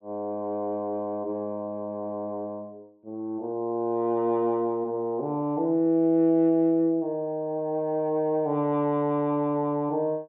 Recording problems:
low-pass filter; nothing above 4 kHz

